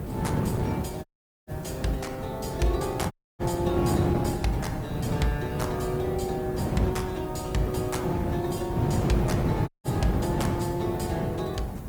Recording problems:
codec artefacts; Opus, log-spectral distance 3 dB
hiss; slope -1 dB per octave, SNR 21 dB
low-frequency rumble; below 150 Hz, SNR 10 dB
wind noise; below 340 Hz, SNR 0 dB
audio cutting out; at 1 s, at 3 s and at 9.5 s

